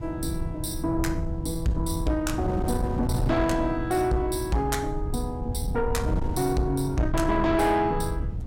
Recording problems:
distortion; soft clipping, signal-to-distortion ratio 10 dB
rumble; below 110 Hz, SNR 7 dB
wind noise; below 210 Hz, SNR 9 dB

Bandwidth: 16 kHz